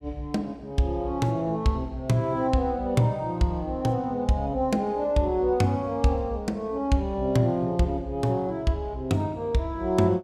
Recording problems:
none

